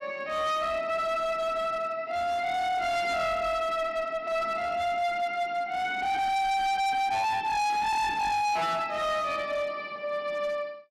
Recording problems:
distorted audio; hard clipping, signal-to-distortion ratio 6 dB

